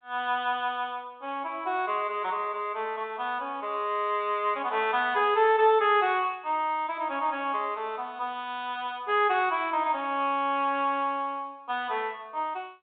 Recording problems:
phone line; 240 Hz to 3.7 kHz, G.726

